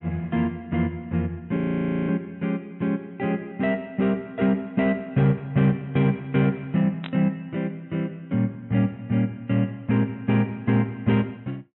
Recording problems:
treble missing; nothing above 3.9 kHz
audio freezing; at 1.5 s for 0.5 s
static burst; at 7 s; peak -7 dB vs average level

